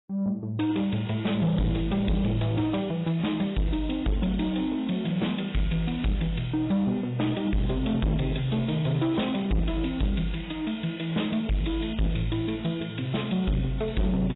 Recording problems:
codec artefacts; AAC, log-spectral distance 6 dB, nothing above 3.8 kHz
distorted audio; soft clipping, signal-to-distortion ratio 7 dB

